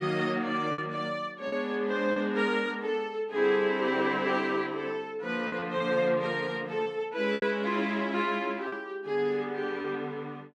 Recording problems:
packet loss; 4% of the sound replaced, filled with repeated pitch periods

